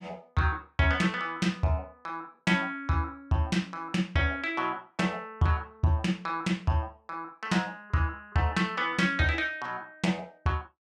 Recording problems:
none

